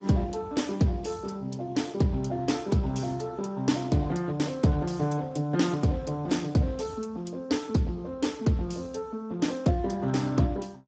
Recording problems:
lossy compression; Speex, log-spectral distance 4 dB, nothing above 7.6 kHz

